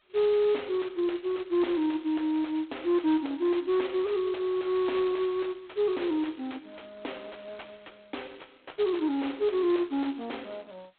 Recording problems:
phone line; 280 Hz to 3.6 kHz, G.726
distorted audio; soft clipping, signal-to-distortion ratio 10 dB

